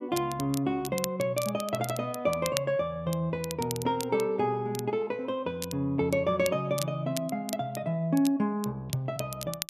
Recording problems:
crackling; vinyl, SNR 11 dB

